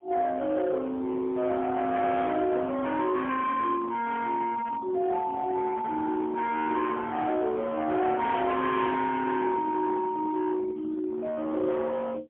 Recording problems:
telephone audio; 990 Hz to 2.3 kHz, AMR-NB, then MP3
distorted audio; hard clipping, signal-to-distortion ratio 9 dB

